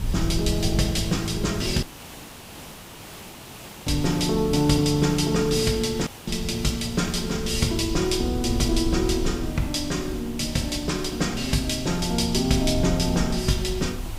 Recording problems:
background hiss; slope -3 dB per octave, SNR 16 dB
wind on the microphone; below 86 Hz, SNR 10 dB
dropout; at 2 s for 2 s and at 6 s

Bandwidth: 15.5 kHz